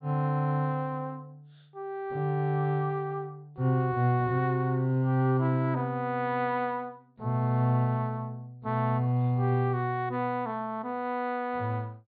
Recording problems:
treble missing; nothing above 4.6 kHz

